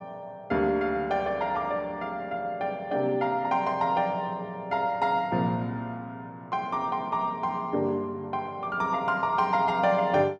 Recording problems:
none

